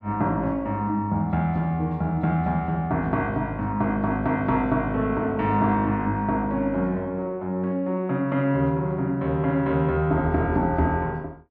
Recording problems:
none

